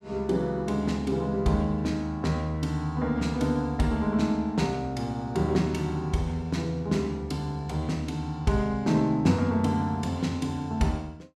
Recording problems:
none

